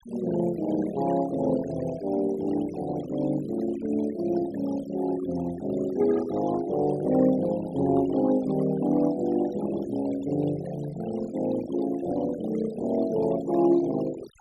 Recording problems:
noise reduction artefacts; signal-to-artefact ratio 16 dB

